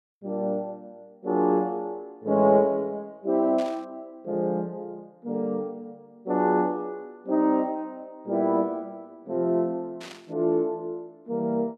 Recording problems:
static burst; at 3.5 s and at 10 s; peak -11 dB vs average level

